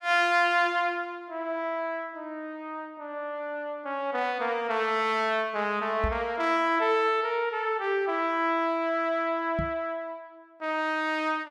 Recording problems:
microphone bump; at 6 s and at 9.5 s; peak +1 dB vs average level

